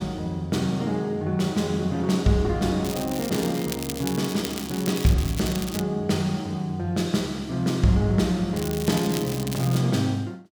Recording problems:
crackling; from 3 to 6 s and from 8.5 to 10 s; loose cable, SNR 10 dB

